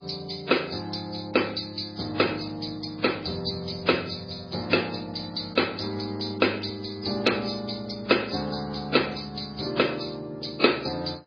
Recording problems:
codec artefacts; MP3, then AAC, log-spectral distance 11 dB

